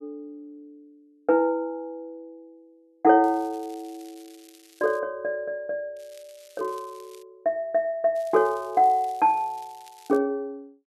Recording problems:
crackling; from 3 to 5 s, from 6 to 7 s and from 8 to 10 s; loose cable, SNR 28 dB

